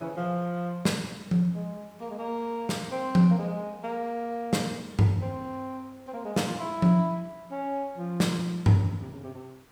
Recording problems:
background hiss; slope -4 dB per octave, SNR 29 dB

